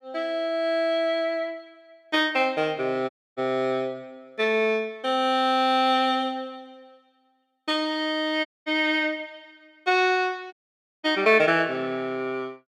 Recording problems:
audio cutting out; at 3 s, at 8.5 s and at 11 s for 0.5 s

